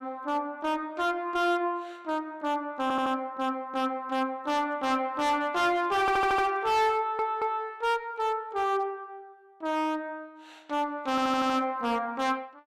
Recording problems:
distorted audio; hard clipping, signal-to-distortion ratio 6 dB
audio stuttering; 4 times, first at 3 s

